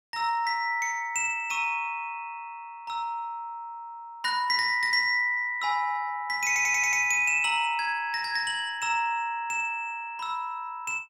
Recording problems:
audio stuttering; at 6.5 s

